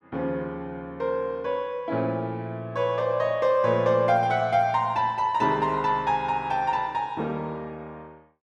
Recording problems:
none

